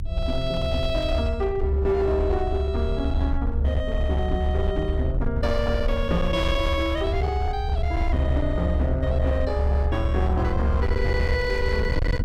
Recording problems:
distorted audio; hard clipping, signal-to-distortion ratio 11 dB
low-frequency rumble; below 72 Hz, strongest tone 70 Hz, SNR 0 dB
wind on the microphone; below 82 Hz, SNR 7 dB

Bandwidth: 16 kHz